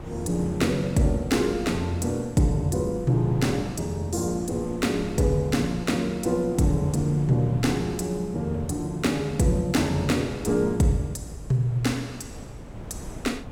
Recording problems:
wind on the microphone; below 350 Hz, SNR 16 dB

